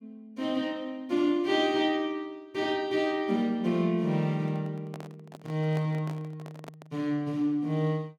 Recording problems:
handling noise; from 4.5 to 7 s; peak -9 dB vs average level

